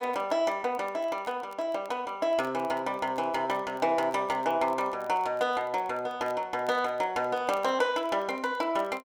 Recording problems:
crackling; vinyl, SNR 28 dB

